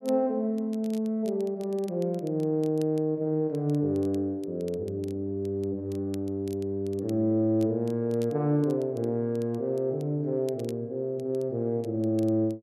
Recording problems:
crackle; vinyl, SNR 27 dB

